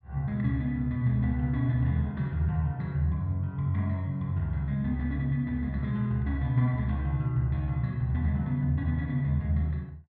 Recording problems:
none

